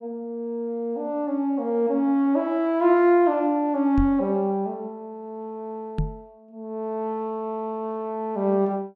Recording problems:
microphone thump; at 4 s and at 6 s; peak +2 dB vs average level

